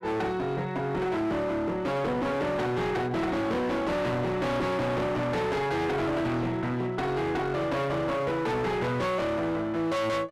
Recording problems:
distortion; hard clipping, uneven, signal-to-distortion ratio 5 dB

